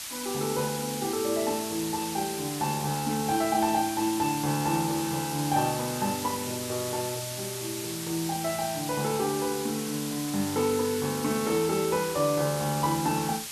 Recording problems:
hiss; slope +3 dB per octave, SNR 6 dB

